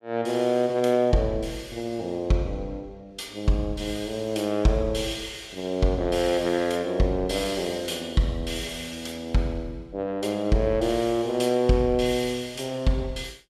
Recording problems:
none

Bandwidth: 14.5 kHz